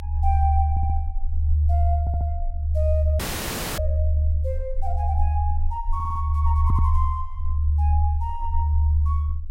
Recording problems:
low-frequency rumble; below 76 Hz, strongest tone 74 Hz, SNR -9 dB
audio stuttering; 4 times, first at 0.5 s
dropout; at 3 s for 0.5 s

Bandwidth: 16 kHz